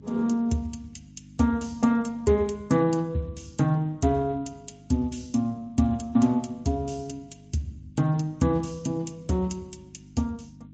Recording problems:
codec artefacts; Speex, then MP3, log-spectral distance 3 dB, nothing above 7.6 kHz
electrical hum; 50 Hz, harmonics up to 300 Hz, SNR 23 dB

